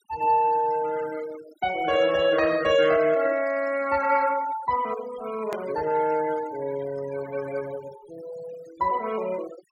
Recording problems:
noise reduction artefacts; signal-to-artefact ratio 17 dB
hard cut with a click; at 5.5 s

